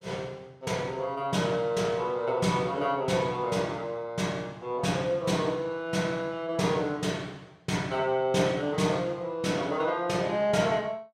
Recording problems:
none

